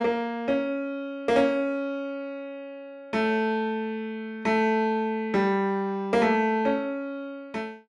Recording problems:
none

